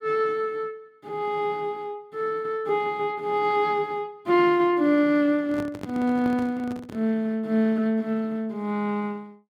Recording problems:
handling noise; from 5.5 to 7 s; peak -6 dB vs average level

